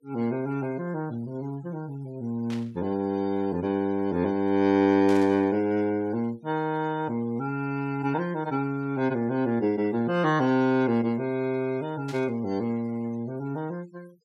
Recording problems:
denoising artefacts; signal-to-artefact ratio 26 dB
burst of static; at 2.5 s, at 5 s and at 12 s; peak -11 dB vs average level

